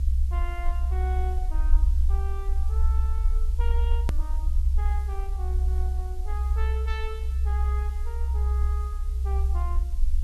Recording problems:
hiss; SNR 15 dB
low-frequency rumble; below 66 Hz, SNR -14 dB
edit click; at 4 s

